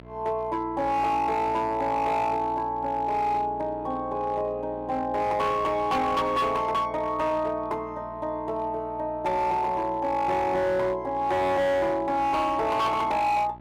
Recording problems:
distorted audio; hard clipping, signal-to-distortion ratio 11 dB
electrical hum; 60 Hz, harmonics up to 1.7 kHz, SNR 21 dB

